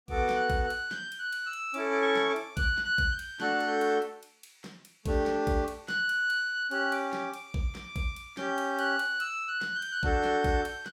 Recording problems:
none

